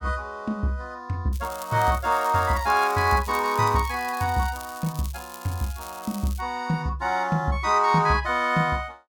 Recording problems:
crackling; from 1.5 to 6.5 s; loose cable, SNR 17 dB

